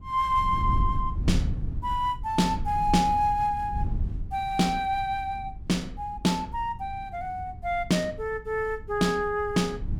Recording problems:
wind noise; below 100 Hz, SNR 8 dB

